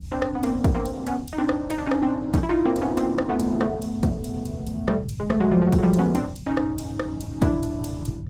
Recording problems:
codec artefacts; Opus, log-spectral distance 3 dB
rumble; below 140 Hz, SNR 10 dB

